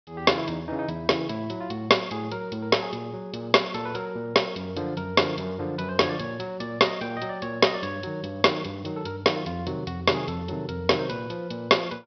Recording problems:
treble cut off; nothing above 5.5 kHz

